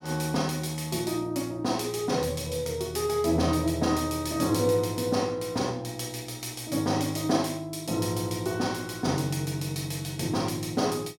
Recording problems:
none

